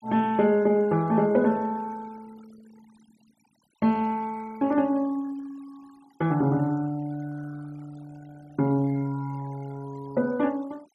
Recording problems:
noise reduction artefacts; signal-to-artefact ratio 26 dB

